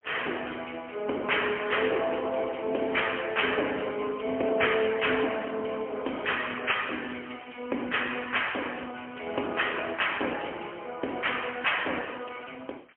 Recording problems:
phone line; 280 Hz to 3.2 kHz, AMR-NB, then MP3

